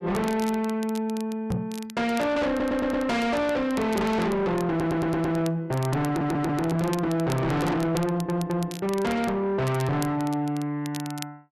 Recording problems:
distorted audio; soft clipping, signal-to-distortion ratio 6 dB
crackle; vinyl, SNR 18 dB
microphone thump; at 1.5 s; peak +1 dB vs average level
stutter; 4 times, first at 2.5 s

